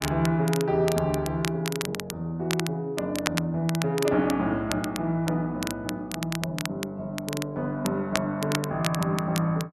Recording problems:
crackle; vinyl, SNR 8 dB

